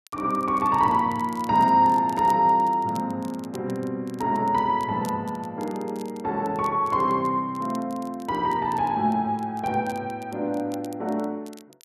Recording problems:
crackling; vinyl, SNR 26 dB

